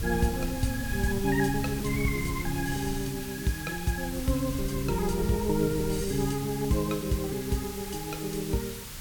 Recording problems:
hiss; slope 0 dB per octave, SNR 10 dB
wind noise; below 120 Hz, SNR 10 dB

